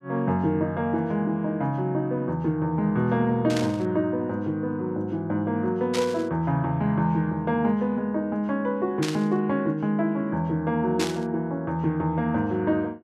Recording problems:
static burst; 4 times, first at 3.5 s; peak -1 dB vs average level

